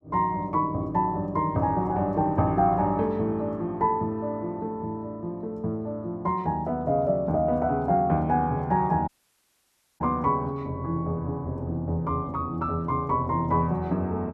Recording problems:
dropout; at 9 s for 1 s

